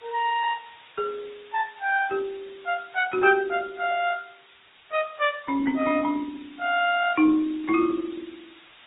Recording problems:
treble missing; nothing above 3.8 kHz
codec artefacts; Opus, then MP3, log-spectral distance 10 dB
hiss; SNR 27 dB

